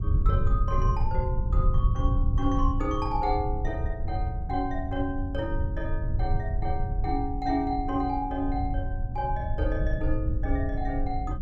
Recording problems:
rumble; below 88 Hz, SNR -2 dB

